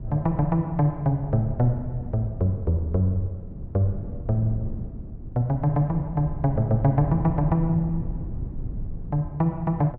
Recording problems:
low-frequency rumble; below 130 Hz, SNR 11 dB
wind on the microphone; below 200 Hz, SNR 20 dB

